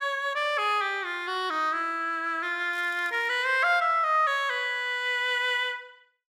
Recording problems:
crackle; at 2.5 s; loose cable, SNR 27 dB

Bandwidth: 14.5 kHz